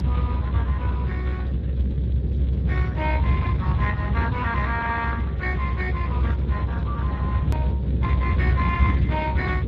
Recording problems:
lossy codec; Speex, log-spectral distance 3 dB
hum; 50 Hz, harmonics up to 650 Hz, SNR 12 dB
rumble; below 140 Hz, strongest tone 64 Hz, SNR -5 dB
hard cut with a click; at 7.5 s

